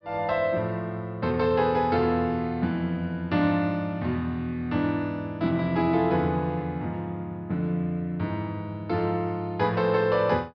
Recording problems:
treble missing; nothing above 5.5 kHz

